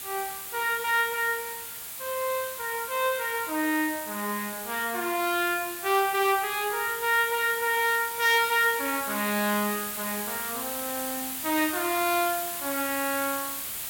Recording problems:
hiss; slope +1 dB per octave, SNR 6 dB

